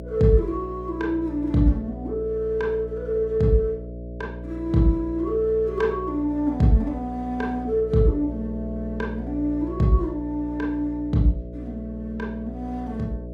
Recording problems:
hum; 60 Hz, harmonics up to 660 Hz, SNR 11 dB

